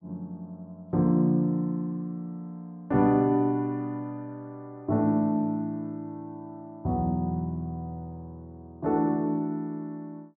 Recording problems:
none

